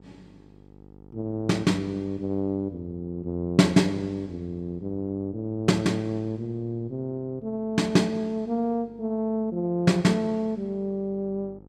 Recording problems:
hum; 50 Hz, harmonics up to 950 Hz, SNR 25 dB

